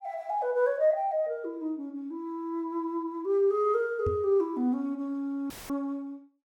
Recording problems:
microphone bump; at 4 s; peak 0 dB vs average level
dropout; at 5.5 s; filled with static

